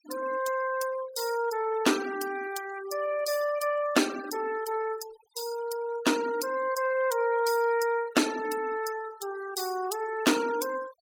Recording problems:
denoising artefacts; signal-to-artefact ratio 14 dB

